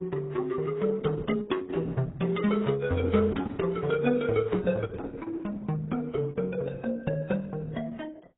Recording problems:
codec artefacts; Opus, then AAC, log-spectral distance 3 dB, nothing above 3.7 kHz

